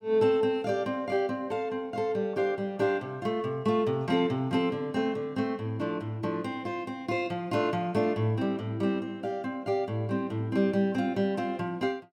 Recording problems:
none

